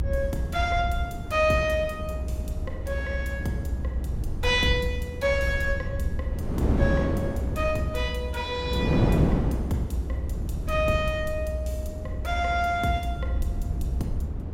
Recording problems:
rumble; below 80 Hz, strongest tone 62 Hz, SNR 4 dB
wind on the microphone; below 330 Hz, SNR 5 dB

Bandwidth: 16 kHz